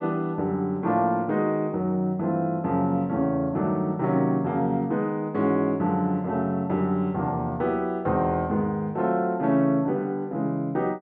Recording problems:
none

